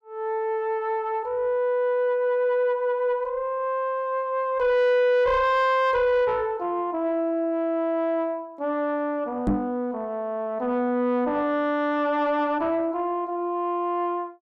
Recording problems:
distorted audio; soft clipping, signal-to-distortion ratio 7 dB
microphone thump; at 9.5 s; peak +4 dB vs average level

